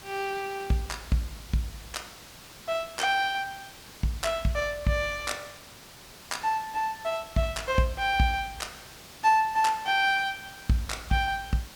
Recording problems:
hiss; slope -1 dB per octave, SNR 17 dB

